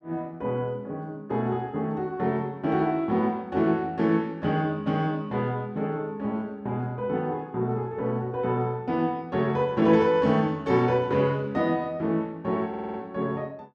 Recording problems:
stutter; at 13 s

